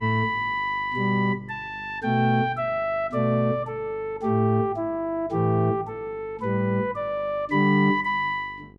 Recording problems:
hum; 50 Hz, harmonics up to 850 Hz, SNR 24 dB

